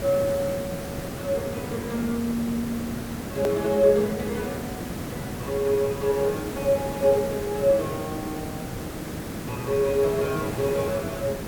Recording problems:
hiss; slope -6 dB per octave, SNR 7 dB
hard cut with a click; at 3.5 s

